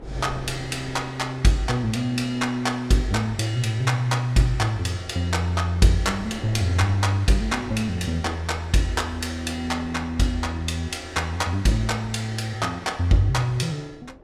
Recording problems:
wind on the microphone; below 470 Hz, SNR 20 dB

